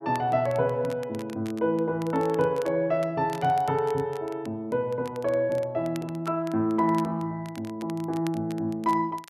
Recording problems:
crackle; vinyl, SNR 22 dB

